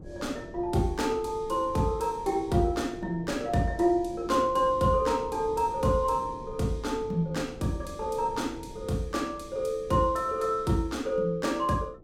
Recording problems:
wind on the microphone; below 330 Hz, SNR 17 dB

